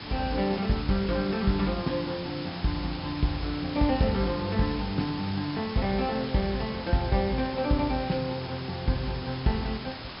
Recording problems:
treble cut off; nothing above 5.3 kHz
background hiss; slope -2 dB per octave, SNR 10 dB

